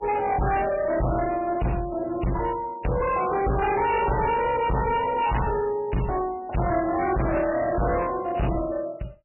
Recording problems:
codec artefacts; MP3, log-spectral distance 4 dB, nothing above 2.4 kHz
distortion; hard clipping, uneven, signal-to-distortion ratio 5 dB

